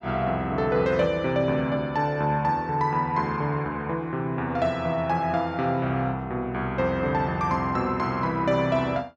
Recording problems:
none

